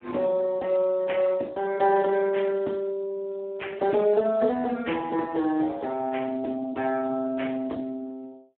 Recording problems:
telephone audio; 220 Hz to 3.3 kHz, Speex

